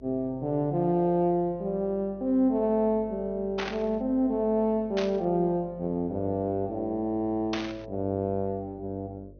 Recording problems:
low-pass filter; nothing above 6.5 kHz
hum; 50 Hz, harmonics up to 600 Hz, SNR 23 dB
burst of static; at 3.5 s, at 5 s and at 7.5 s; peak -1 dB vs average level

